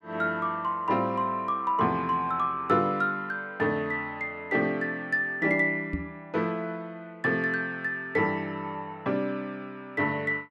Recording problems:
microphone thump; at 6 s; peak 0 dB vs average level

